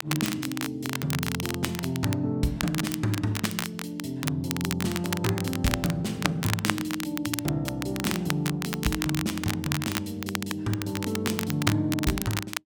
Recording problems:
crackling; vinyl, SNR 4 dB

